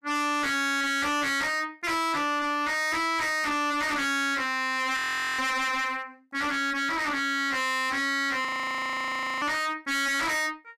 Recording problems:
distorted audio; hard clipping, uneven, signal-to-distortion ratio 6 dB
audio freezing; at 5 s and at 8.5 s for 1 s

